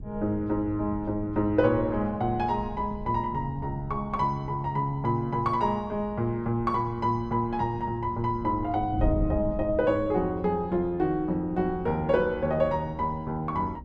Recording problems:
wind noise; below 150 Hz, SNR 12 dB

